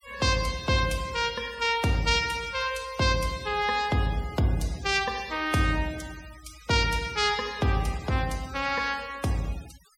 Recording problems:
denoising artefacts; signal-to-artefact ratio 20 dB

